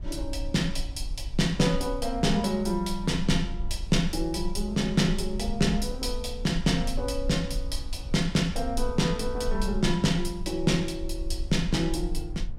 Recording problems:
low-frequency rumble; below 48 Hz, strongest tone 20 Hz, SNR 9 dB

